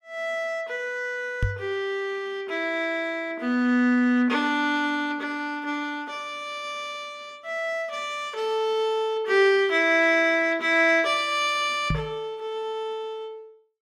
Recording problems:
microphone bump; at 1.5 s and at 12 s; peak +2 dB vs average level

